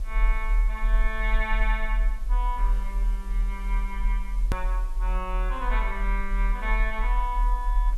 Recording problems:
background hiss; SNR 20 dB
rumble; below 42 Hz, strongest tone 38 Hz, SNR -5 dB
click at an edit; at 4.5 s

